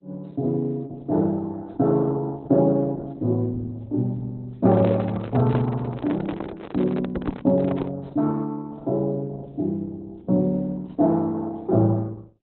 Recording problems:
lossy codec; Opus, log-spectral distance 2 dB, nothing above 3.9 kHz
microphone handling noise; from 4.5 to 8 s; peak -2 dB vs average level

